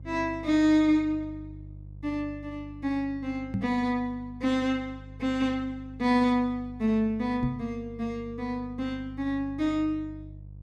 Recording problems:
hum; 50 Hz, harmonics up to 350 Hz, SNR 17 dB
microphone thump; at 3.5 s and at 7.5 s; peak +2 dB vs average level

